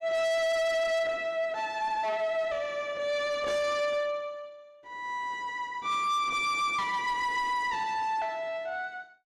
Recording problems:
distortion; soft clipping, signal-to-distortion ratio 7 dB

